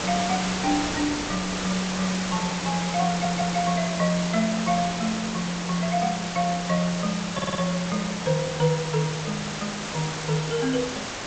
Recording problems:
lossy codec; G.722, log-spectral distance 15 dB
background hiss; slope -2 dB per octave, SNR 4 dB
wind noise; below 490 Hz, SNR 22 dB
audio stuttering; at 3 s and at 7.5 s

